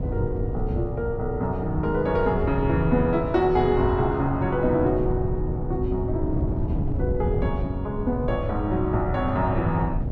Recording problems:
wind on the microphone; below 140 Hz, SNR 5 dB

